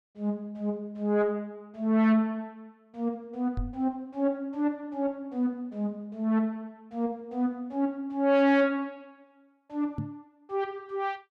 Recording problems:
distortion; soft clipping, signal-to-distortion ratio 11 dB
microphone bump; at 3.5 s and at 10 s; peak -1 dB vs average level

